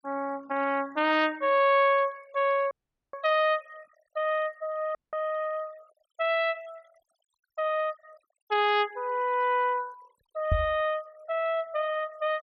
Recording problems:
noise reduction artefacts; signal-to-artefact ratio 24 dB
audio cutting out; at 2.5 s and at 5 s
knock on the microphone; at 11 s; peak +4 dB vs average level

